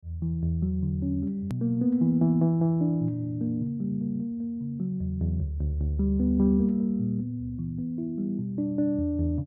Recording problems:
edit click; at 1.5 s

